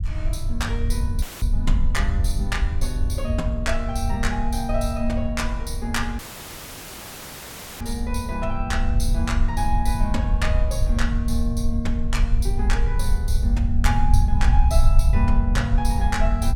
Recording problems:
rumble; below 68 Hz, SNR -4 dB
dropout; at 1 s and at 6 s for 1.5 s; filled with static

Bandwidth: 17 kHz